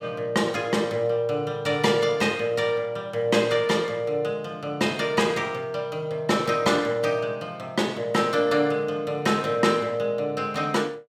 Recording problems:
none

